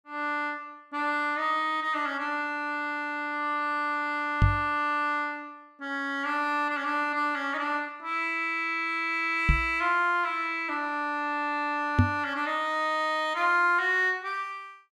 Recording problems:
microphone thump; at 4.5 s, at 9.5 s and at 12 s; peak +9 dB vs average level

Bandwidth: 14.5 kHz